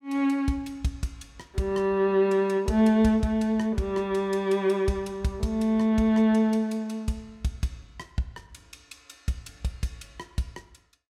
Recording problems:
none

